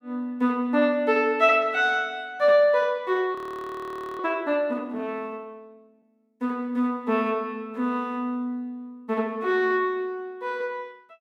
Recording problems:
frozen audio; at 3.5 s for 1 s

